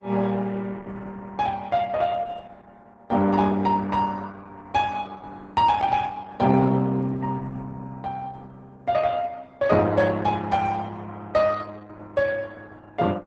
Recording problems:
lossy compression; Opus, log-spectral distance 3 dB, nothing above 8 kHz

